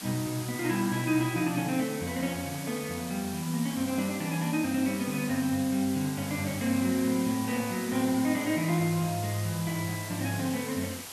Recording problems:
background hiss; slope 0 dB per octave, SNR 10 dB

